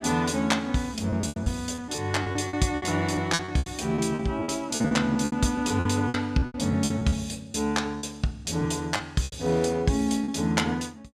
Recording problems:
lost packets; 13% of the sound replaced, filled with repeated pitch periods

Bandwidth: 14.5 kHz